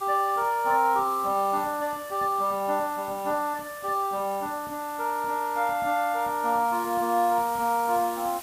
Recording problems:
hiss; SNR 16 dB

